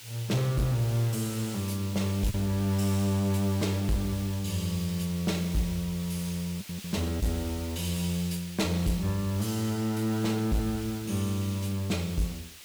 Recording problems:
distortion; hard clipping, uneven, signal-to-distortion ratio 10 dB
background hiss; SNR 13 dB
packet loss; 1.5% of the sound replaced, filled with the last packet

